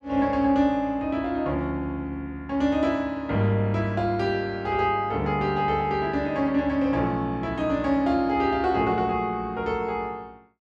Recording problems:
none

